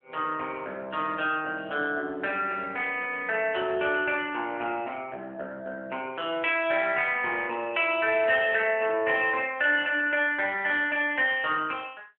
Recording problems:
telephone audio; 300 Hz to 3.4 kHz, AMR-NB

